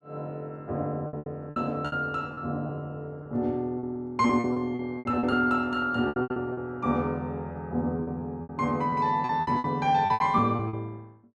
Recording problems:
lost packets; 13% of the sound replaced, filled with repeated pitch periods

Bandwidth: 12.5 kHz